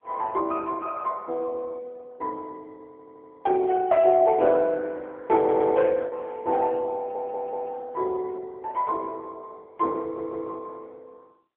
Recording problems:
phone line; 280 Hz to 3.1 kHz, AMR-NB
lost packets; 0.8% of the sound replaced, filled with the last packet
stutter; 4 times, first at 3 s

